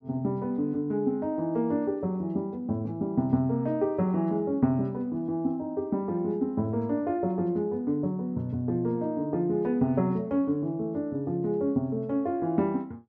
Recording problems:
none

